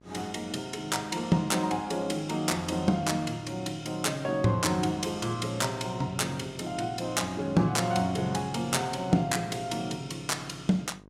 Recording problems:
hum; 50 Hz, harmonics up to 1.6 kHz, SNR 25 dB

